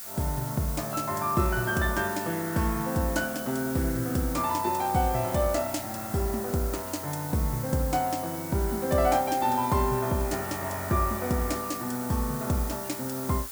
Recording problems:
background hiss; SNR 9 dB

